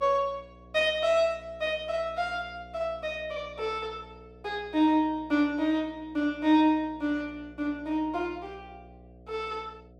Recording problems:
electrical hum; 60 Hz, harmonics up to 720 Hz, SNR 23 dB

